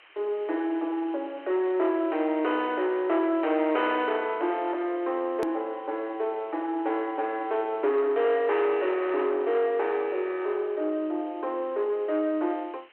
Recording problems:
phone line; 280 Hz to 3.5 kHz, G.726
distortion; soft clipping, signal-to-distortion ratio 11 dB
hiss; SNR 27 dB
edit click; at 5.5 s

